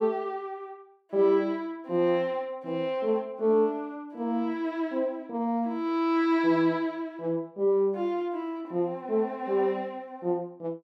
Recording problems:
none

